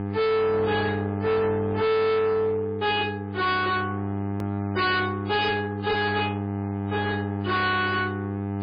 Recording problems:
lossy compression; MP3, log-spectral distance 3 dB, nothing above 4.1 kHz
distorted audio; hard clipping, signal-to-distortion ratio 6 dB
hum; 50 Hz, harmonics up to 1.3 kHz, SNR 5 dB
hard cut with a click; at 4.5 s

